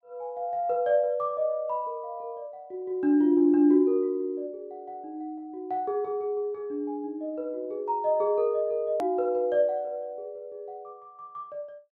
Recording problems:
edit click; at 9 s

